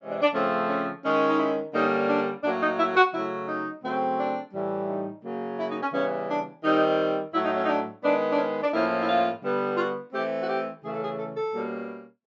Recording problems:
treble cut off; nothing above 7.4 kHz

